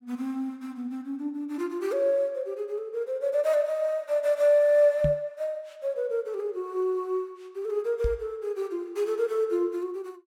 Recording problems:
microphone bump; at 5 s and at 8 s; peak +2 dB vs average level

